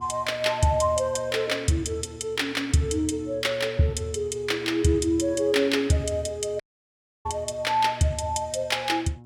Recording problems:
electrical hum; 60 Hz, harmonics up to 1.1 kHz, SNR 20 dB
dropout; at 6.5 s for 0.5 s

